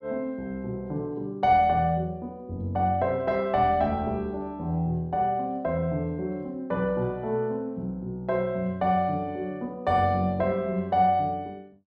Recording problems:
none

